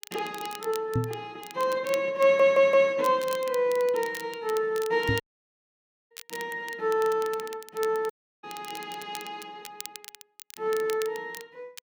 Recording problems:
crackle; vinyl, SNR 17 dB
microphone bump; at 1 s and at 5 s; peak +2 dB vs average level
audio stuttering; at 2 s
audio cutting out; at 5 s for 1 s and at 8 s

